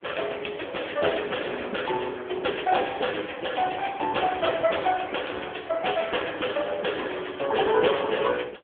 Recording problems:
telephone audio; 300 Hz to 3.3 kHz, AMR-NB

